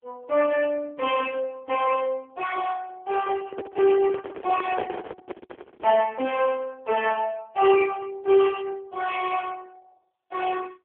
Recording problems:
phone line; 240 Hz to 3.3 kHz, AMR-NB
handling noise; from 3.5 to 6 s; peak -2 dB vs average level

